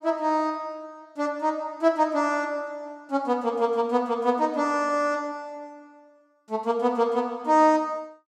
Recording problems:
none

